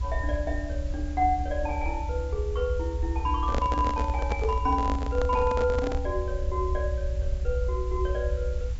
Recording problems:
low-pass filter; nothing above 8 kHz
background hiss; slope -2 dB per octave, SNR 21 dB
low-frequency rumble; below 72 Hz, SNR 1 dB
microphone handling noise; from 3.5 to 6 s; peak +2 dB vs average level

